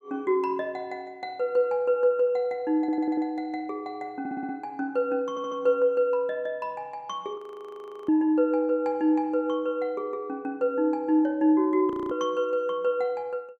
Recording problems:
stutter; at 3 s, at 4 s and at 5.5 s
frozen audio; at 7.5 s for 0.5 s and at 12 s

